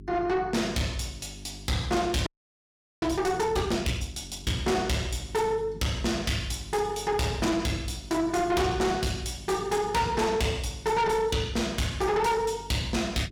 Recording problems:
distorted audio; soft clipping, signal-to-distortion ratio 8 dB
hum; 50 Hz, harmonics up to 400 Hz, SNR 18 dB
audio freezing; at 2.5 s for 1 s

